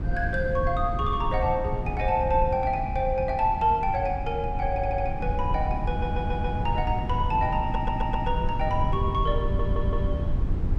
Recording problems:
rumble; below 120 Hz, SNR 3 dB
audio stuttering; 4 times, first at 4.5 s

